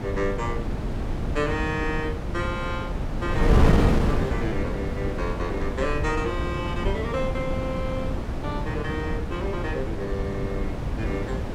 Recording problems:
wind noise; below 270 Hz, SNR -3 dB

